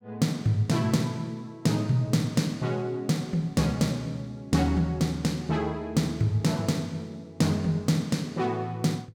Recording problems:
none

